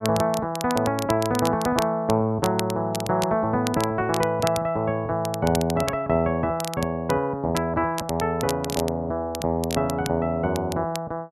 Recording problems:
crackle; vinyl, SNR 12 dB

